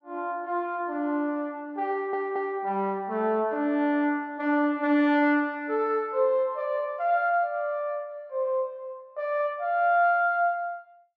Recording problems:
audio stuttering; at 2 s

